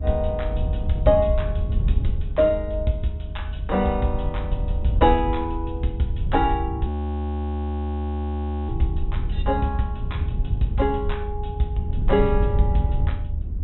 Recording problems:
treble cut off; nothing above 3.9 kHz
rumble; below 86 Hz, SNR 2 dB
audio freezing; at 7 s for 2 s

